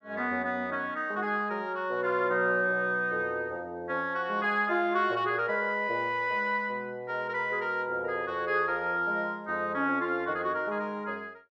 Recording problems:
none

